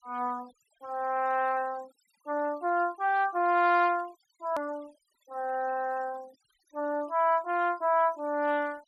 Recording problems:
noise reduction artefacts; signal-to-artefact ratio 28 dB
edit click; at 4.5 s

